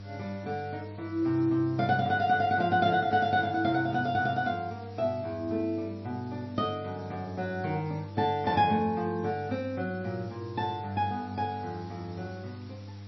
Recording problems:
lossy compression; MP3, log-spectral distance 6 dB, nothing above 5.7 kHz
mains hum; 50 Hz, harmonics up to 700 Hz, SNR 14 dB
hiss; slope 0 dB per octave, SNR 27 dB

